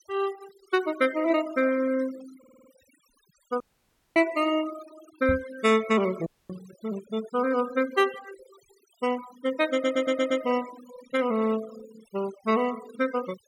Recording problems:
denoising artefacts; signal-to-artefact ratio 17 dB
audio stuttering; at 2.5 s and at 9.5 s
audio cutting out; at 3.5 s for 0.5 s and at 6.5 s
microphone bump; at 5.5 s; peak 0 dB vs average level

